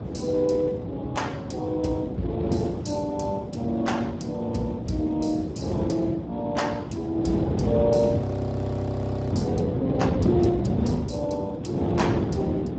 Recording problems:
lossy compression; Speex, log-spectral distance 3 dB, nothing above 7.8 kHz
wind on the microphone; below 390 Hz, SNR 1 dB
audio freezing; at 8 s for 1 s

